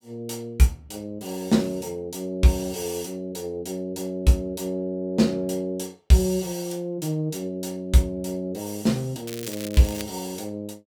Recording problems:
crackling; at 9.5 s; loose cable, SNR 12 dB

